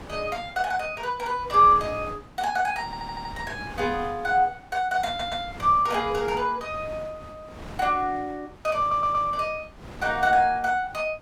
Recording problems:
wind noise; below 880 Hz, SNR 18 dB
audio stuttering; at 3 s, at 5 s and at 9 s

